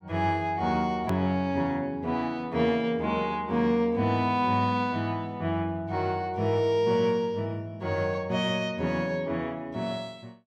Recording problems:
edit click; at 1 s

